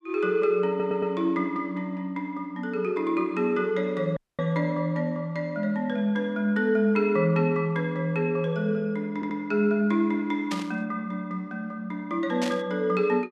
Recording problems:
stutter; at 0.5 s and at 9 s
audio cutting out; at 4 s
burst of static; at 11 s and at 12 s; peak -3 dB vs average level

